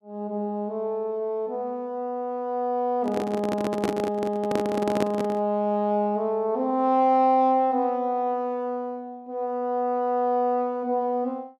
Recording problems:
handling noise; from 3 to 5.5 s; peak +2 dB vs average level

